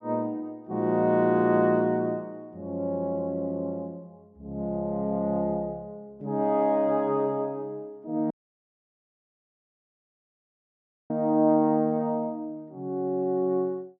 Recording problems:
dropout; at 8.5 s for 3 s

